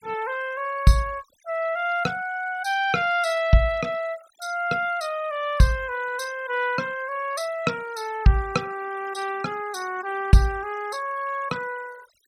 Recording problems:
noise reduction artefacts; signal-to-artefact ratio 19 dB

